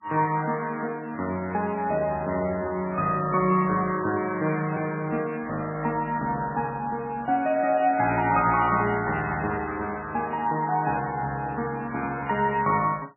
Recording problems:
lossy compression; MP3, log-spectral distance 3 dB, nothing above 2.5 kHz

